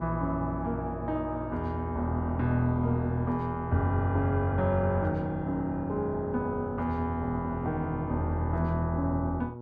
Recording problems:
hum; 60 Hz, harmonics up to 1.1 kHz, SNR 12 dB

